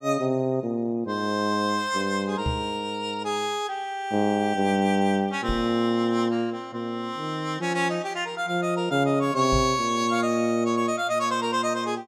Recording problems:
microphone thump; at 2.5 s, at 5.5 s and at 9.5 s; peak 0 dB vs average level

